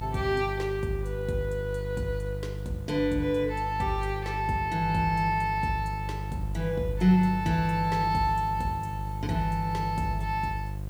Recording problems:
hum; 50 Hz, harmonics up to 700 Hz, SNR 7 dB
hiss; slope -3 dB per octave, SNR 28 dB

